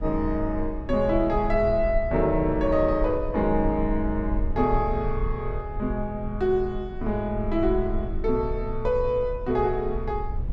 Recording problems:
low-frequency rumble; below 58 Hz, SNR 8 dB

